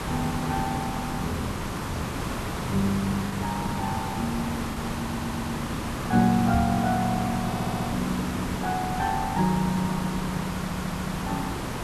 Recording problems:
hiss; SNR 3 dB
lost packets; 0.8% of the sound replaced, filled with the last packet
audio stuttering; at 5 s, at 7.5 s and at 10 s
microphone bump; at 6.5 s; peak +4 dB vs average level

